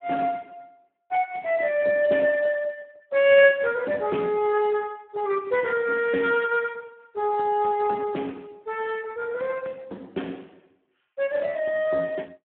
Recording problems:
telephone audio; 240 Hz to 3.3 kHz, Speex

